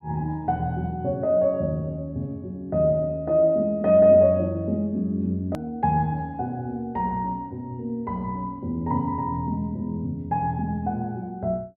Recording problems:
treble cut off; nothing above 5.5 kHz
click at an edit; at 5.5 s

